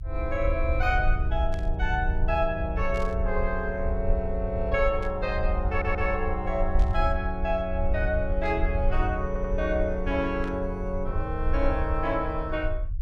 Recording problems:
low-frequency rumble; below 68 Hz, SNR 2 dB
burst of static; 5 times, first at 1.5 s; peak -12 dB vs average level
audio stuttering; at 5.5 s and at 9.5 s

